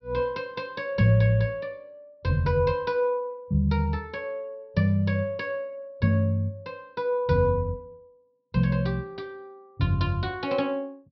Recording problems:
treble cut off; nothing above 5.5 kHz

